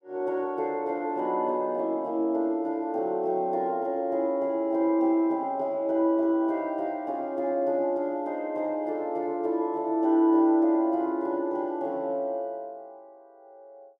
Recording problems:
none

